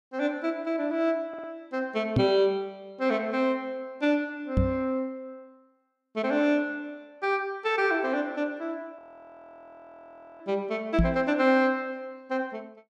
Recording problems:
stutter; at 1.5 s
knock on the microphone; at 2 s, at 4.5 s and at 11 s; peak +7 dB vs average level
audio freezing; at 9 s for 1.5 s

